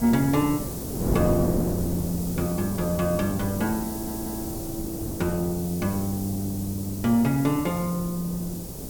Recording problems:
hiss; SNR 10 dB
wind noise; below 400 Hz, SNR 6 dB
audio stuttering; at 4 s

